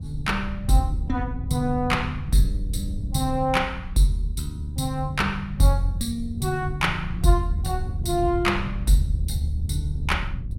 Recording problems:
wind on the microphone; below 110 Hz, SNR 8 dB

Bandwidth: 16 kHz